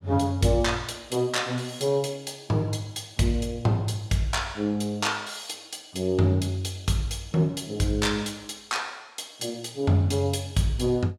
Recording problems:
none

